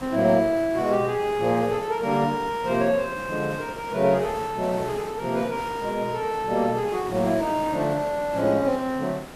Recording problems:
hiss; slope -6 dB per octave, SNR 14 dB

